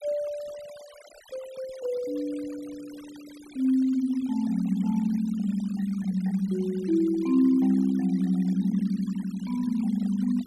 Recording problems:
denoising artefacts; signal-to-artefact ratio 23 dB

